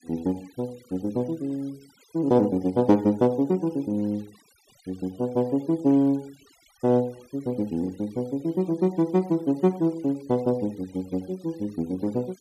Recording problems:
noise reduction artefacts; signal-to-artefact ratio 28 dB

